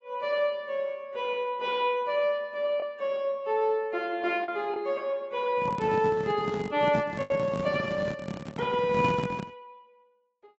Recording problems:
codec artefacts; AAC, log-spectral distance 2 dB, nothing above 7.6 kHz
packet loss; 1.6% of the sound replaced, filled with the last packet
handling noise; from 5.5 to 9.5 s; peak +1 dB vs average level

